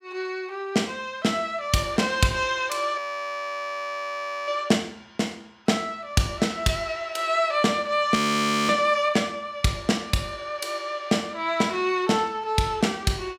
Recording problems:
frozen audio; at 3 s for 1.5 s and at 8 s for 0.5 s

